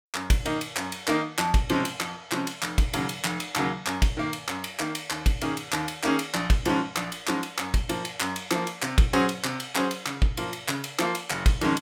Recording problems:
none

